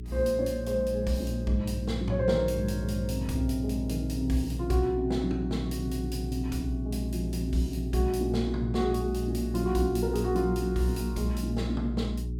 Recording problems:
hum; 60 Hz, harmonics up to 420 Hz, SNR 5 dB

